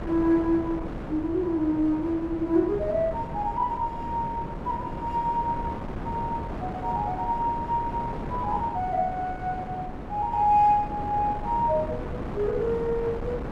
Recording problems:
wind noise; below 560 Hz, SNR 8 dB

